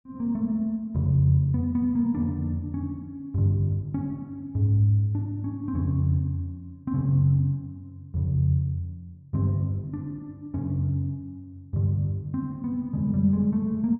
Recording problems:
none

